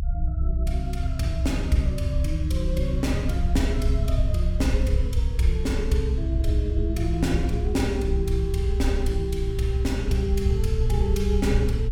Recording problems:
rumble; below 68 Hz, SNR -1 dB

